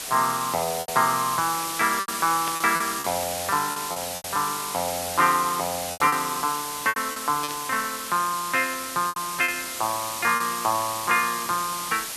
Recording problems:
hiss; slope +1 dB per octave, SNR 5 dB
lost packets; 7% of the sound replaced, filled with repeated pitch periods
burst of static; at 2.5 s and at 7.5 s; peak -3 dB vs average level

